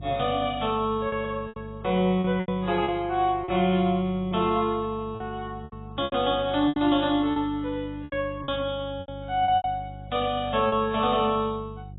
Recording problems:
codec artefacts; AAC, log-spectral distance 2 dB, nothing above 3.8 kHz
hum; 50 Hz, harmonics up to 400 Hz, SNR 16 dB
lost packets; 8% of the sound replaced, filled with repeated pitch periods

